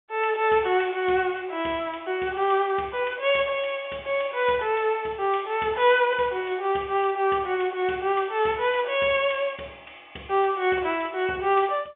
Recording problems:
phone line; 240 Hz to 3.5 kHz, G.711

